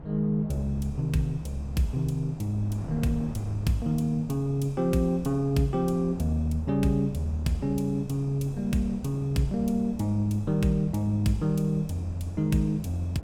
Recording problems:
wind noise; below 270 Hz, SNR 15 dB

